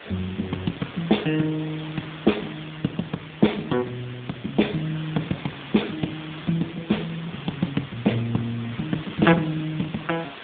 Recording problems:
phone line; 130 Hz to 3.6 kHz, AMR-NB
background hiss; SNR 13 dB

